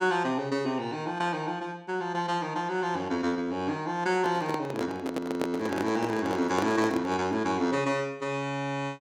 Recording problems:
handling noise; from 4 to 7.5 s; peak +1 dB vs average level

